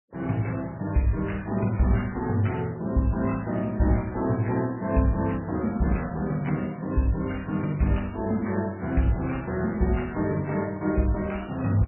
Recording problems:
lossy compression; MP2, then MP3, log-spectral distance 4 dB, nothing above 2.7 kHz

